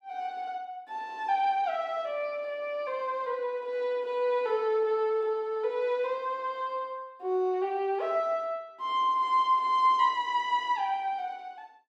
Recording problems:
none

